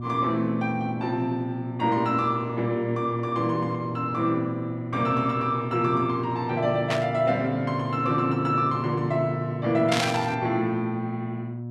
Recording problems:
electrical hum; 60 Hz, harmonics up to 720 Hz, SNR 8 dB
burst of static; at 7 s and at 10 s; peak +3 dB vs average level

